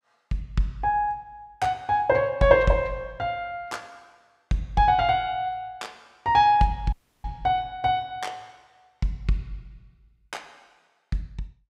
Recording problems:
dropout; at 7 s

